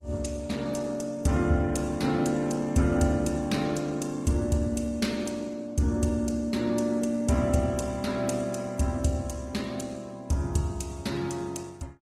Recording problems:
lossy codec; Opus, log-spectral distance 4 dB, nothing above 18.3 kHz

